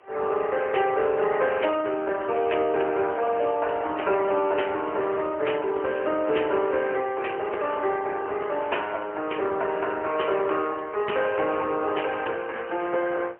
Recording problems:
telephone audio; 320 Hz to 3 kHz, AMR-NB, then MP3
wind noise; below 1.4 kHz, SNR 24 dB

